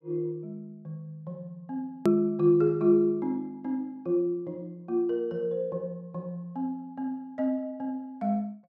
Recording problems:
hard cut with a click; at 2 s

